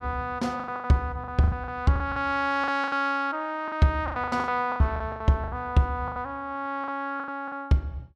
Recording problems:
packet loss; 16% of the sound replaced, filled with the last packet

